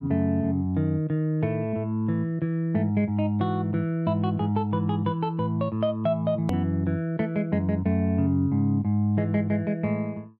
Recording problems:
edit click; at 6.5 s

